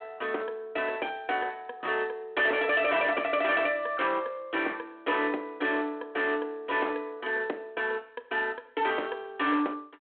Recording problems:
telephone audio; 240 Hz to 3.4 kHz, G.726
distortion; hard clipping, signal-to-distortion ratio 12 dB

